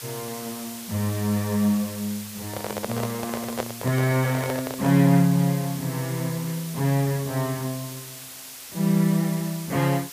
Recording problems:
background hiss; slope +1 dB per octave, SNR 12 dB
microphone handling noise; from 2.5 to 5 s; peak +1 dB vs average level

